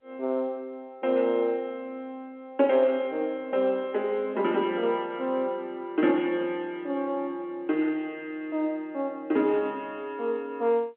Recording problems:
telephone audio; 220 Hz to 3.3 kHz, G.711

